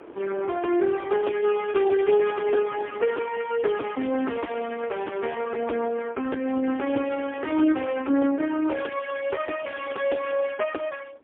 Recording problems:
telephone audio; 240 Hz to 3.3 kHz, AMR-NB, then MP3
wind on the microphone; below 680 Hz, SNR 22 dB

